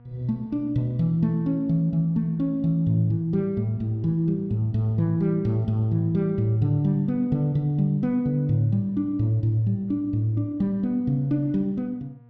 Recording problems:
hum; 60 Hz, harmonics up to 1.2 kHz, SNR 27 dB

